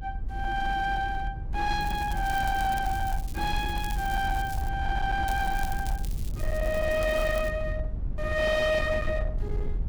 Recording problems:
distortion; hard clipping, uneven, signal-to-distortion ratio 12 dB
rumble; below 80 Hz, SNR 5 dB
crackling; from 2 to 4.5 s and from 5.5 to 7.5 s; loose cable, SNR 17 dB

